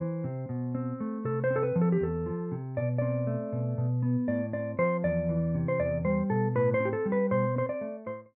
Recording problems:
none

